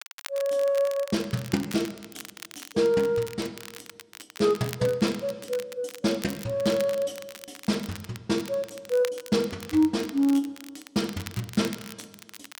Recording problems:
crackling; vinyl, SNR 15 dB

